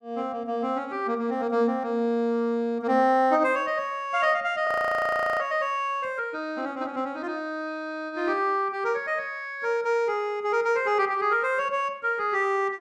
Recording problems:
frozen audio; at 4.5 s for 0.5 s

